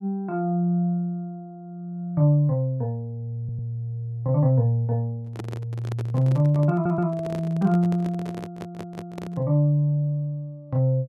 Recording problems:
stutter; at 3.5 s, at 6.5 s and at 8.5 s
microphone handling noise; from 5 to 9.5 s; peak -7 dB vs average level

